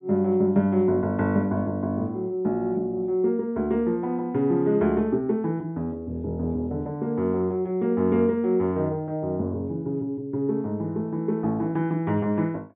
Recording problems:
treble cut off; nothing above 4 kHz

